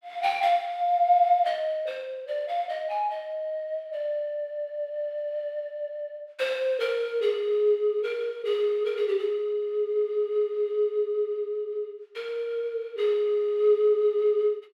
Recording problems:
none

